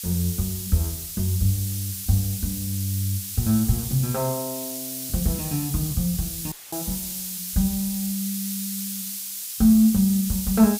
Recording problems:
background hiss; slope +7 dB per octave, SNR 5 dB
audio cutting out; at 6.5 s; filled with static

